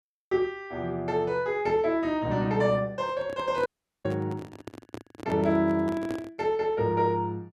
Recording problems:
microphone handling noise; from 3 to 6.5 s; peak -4 dB vs average level
dropout; at 3.5 s

